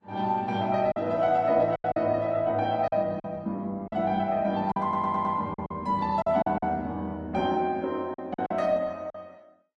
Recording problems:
codec artefacts; Opus, then Vorbis, log-spectral distance 2 dB
lost packets; 8% of the sound replaced, filled with silence
audio stuttering; at 5 s

